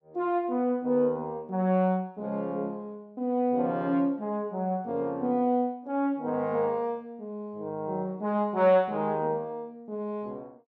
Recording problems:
none

